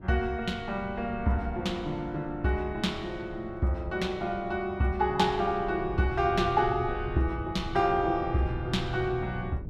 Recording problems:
wind on the microphone; below 140 Hz, SNR 12 dB

